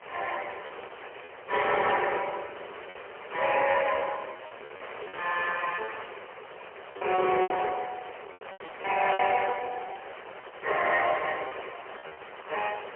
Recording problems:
phone line; 340 Hz to 3.1 kHz, AMR-NB, then MP3
wind on the microphone; below 2.1 kHz, SNR 13 dB
packet loss; 6% of the sound replaced, filled with repeated pitch periods

